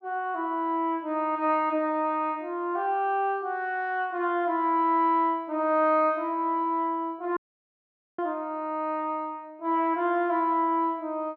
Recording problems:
treble missing; nothing above 8 kHz
audio cutting out; at 7.5 s for 1 s

